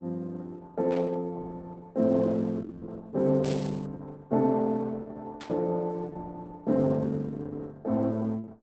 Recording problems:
codec artefacts; Opus, log-spectral distance 3 dB, nothing above 7.8 kHz
static burst; at 1 s, at 3.5 s and at 5.5 s; peak -11 dB vs average level

